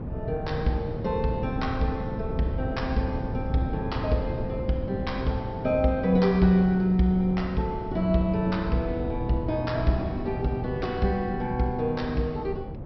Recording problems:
treble missing; nothing above 5.6 kHz
wind noise; below 250 Hz, SNR 8 dB

